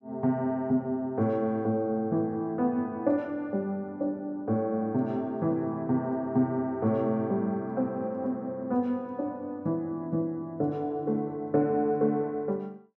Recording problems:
none

